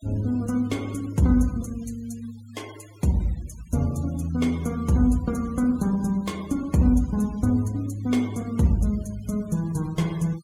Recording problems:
denoising artefacts; signal-to-artefact ratio 24 dB

